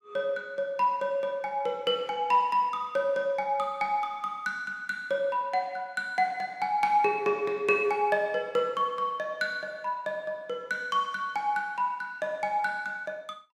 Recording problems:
none

